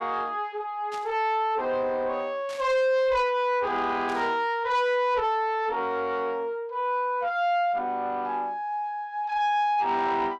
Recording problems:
distorted audio; soft clipping, signal-to-distortion ratio 11 dB
static burst; at 1 s, at 2.5 s and at 4 s; peak -12 dB vs average level

